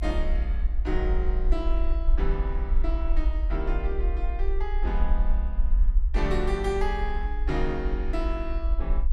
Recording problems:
rumble; below 48 Hz, SNR -4 dB

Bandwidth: 13.5 kHz